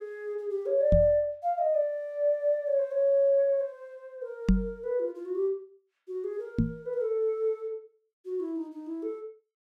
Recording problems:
microphone bump; at 1 s, at 4.5 s and at 6.5 s; peak +9 dB vs average level

